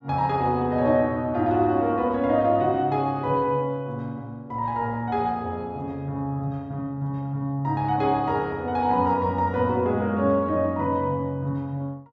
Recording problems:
none

